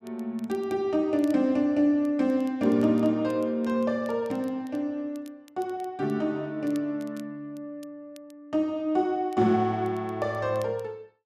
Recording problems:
crackle; vinyl, SNR 30 dB

